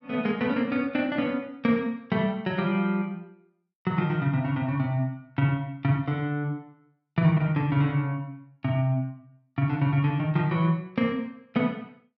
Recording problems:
none

